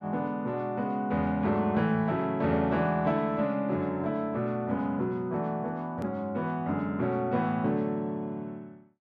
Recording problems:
click at an edit; at 6 s

